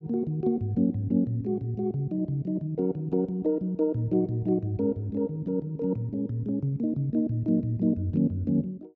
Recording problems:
none

